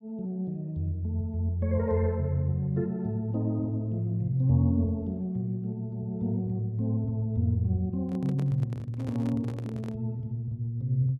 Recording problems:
handling noise; from 8 to 10 s; peak -8 dB vs average level

